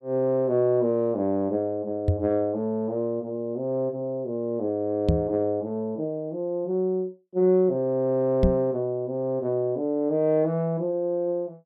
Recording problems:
knock on the microphone; at 2 s, at 5 s and at 8.5 s; peak +7 dB vs average level

